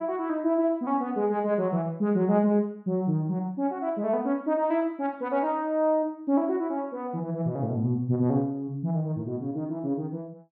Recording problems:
none

